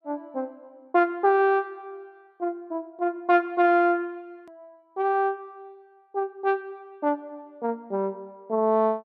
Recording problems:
edit click; at 4.5 s

